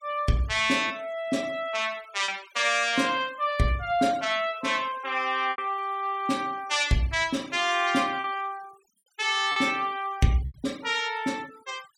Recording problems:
denoising artefacts; signal-to-artefact ratio 22 dB
lost packets; 3% of the sound replaced, filled with repeated pitch periods

